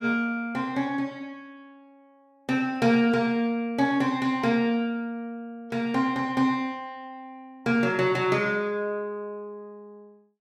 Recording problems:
none

